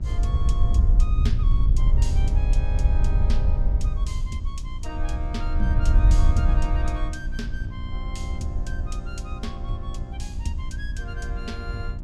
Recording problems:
electrical hum; 60 Hz, harmonics up to 960 Hz, SNR 7 dB
wind noise; below 66 Hz, SNR -10 dB

